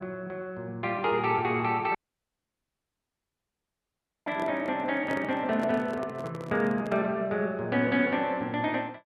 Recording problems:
dropout; at 2 s for 2.5 s
microphone handling noise; from 4.5 to 7 s; peak -5 dB vs average level

